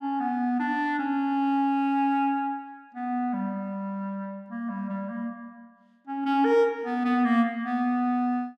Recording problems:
none

